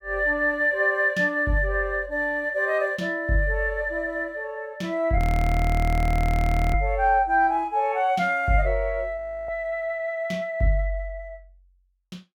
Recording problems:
audio freezing; at 5 s for 1.5 s and at 9 s

